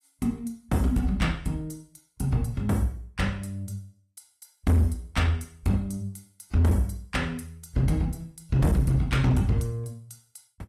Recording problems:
codec artefacts; AAC, log-spectral distance 2 dB
distorted audio; hard clipping, uneven, signal-to-distortion ratio 10 dB

